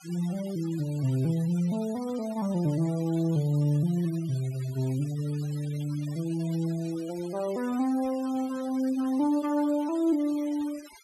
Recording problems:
noise reduction artefacts; signal-to-artefact ratio 20 dB

